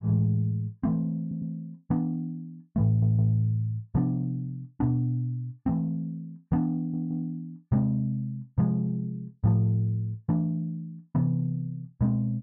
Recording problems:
audio stuttering; at 1 s, at 3 s and at 7 s

